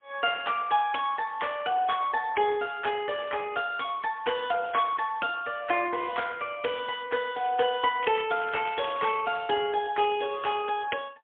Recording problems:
phone line; 280 Hz to 3.4 kHz, AMR-NB, then MP3
crackling; from 8 to 9 s; loose cable, SNR 16 dB

